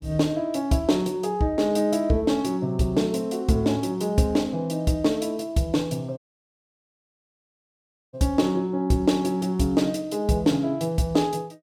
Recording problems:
audio cutting out; at 6 s for 2 s

